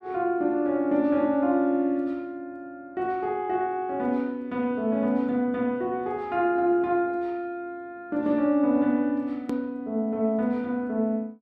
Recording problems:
edit click; at 9.5 s

